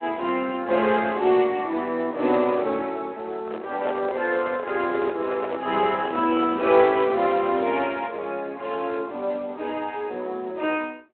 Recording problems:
phone line; 280 Hz to 3.3 kHz, Speex
microphone handling noise; from 3.5 to 7 s; peak -2 dB vs average level

